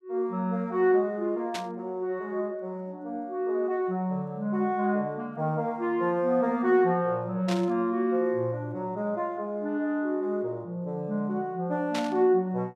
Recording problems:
static burst; at 1.5 s, at 7.5 s and at 12 s; peak -3 dB vs average level

